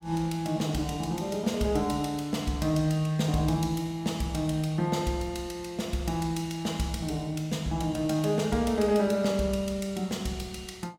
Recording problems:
none

